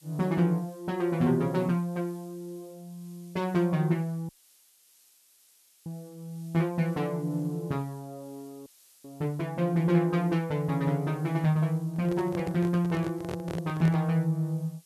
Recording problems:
background hiss; slope +3 dB per octave, SNR 28 dB
audio cutting out; at 4.5 s for 1.5 s and at 8.5 s
microphone handling noise; from 12 to 14 s; peak -5 dB vs average level

